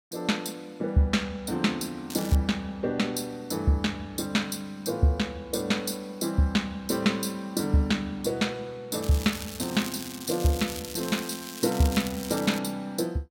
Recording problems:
crackle; at 2 s and from 9 to 13 s; loose cable, SNR 10 dB

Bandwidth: 16.5 kHz